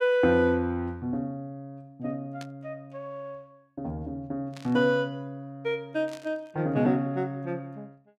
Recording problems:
burst of static; at 2.5 s, at 4.5 s and at 6 s; peak -11 dB vs average level

